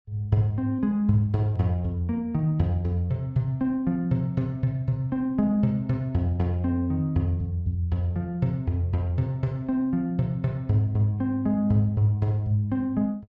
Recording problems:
none

